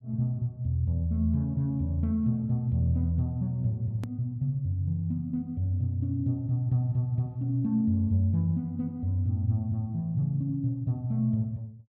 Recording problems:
edit click; at 4 s

